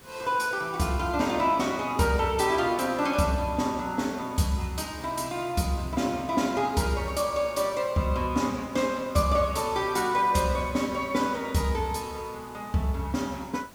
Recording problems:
hiss; slope -4 dB per octave, SNR 23 dB

